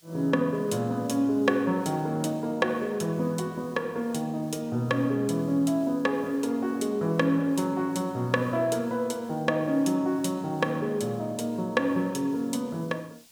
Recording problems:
background hiss; slope +2 dB per octave, SNR 28 dB

